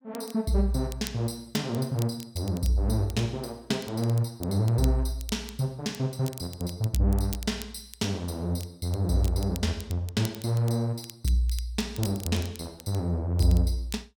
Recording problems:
crackling; vinyl, SNR 17 dB

